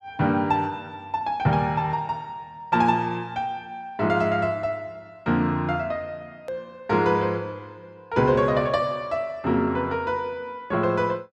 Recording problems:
click at an edit; at 6.5 s

